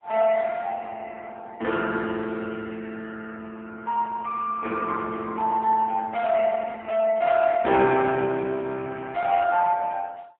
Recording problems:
phone line; 190 Hz to 2.8 kHz, AMR-NB, then MP3

